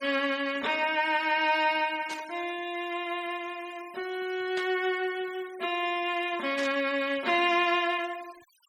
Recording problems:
denoising artefacts; signal-to-artefact ratio 20 dB
static burst; at 2 s, at 4.5 s and at 6.5 s; peak -6 dB vs average level

